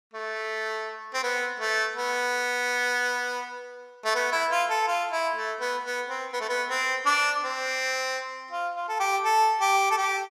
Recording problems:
none

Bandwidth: 14.5 kHz